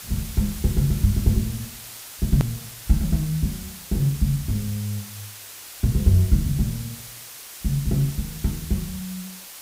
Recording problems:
background hiss; slope +1 dB per octave, SNR 12 dB
edit click; at 2.5 s

